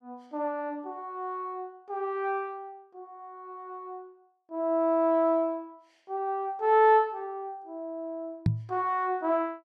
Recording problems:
knock on the microphone; at 8.5 s; peak +7 dB vs average level

